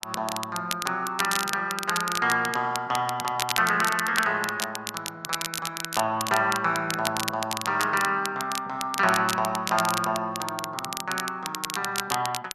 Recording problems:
crackle; vinyl, SNR 6 dB

